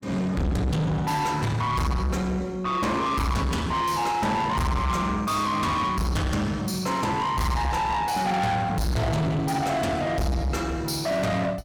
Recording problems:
distorted audio; soft clipping, signal-to-distortion ratio 6 dB

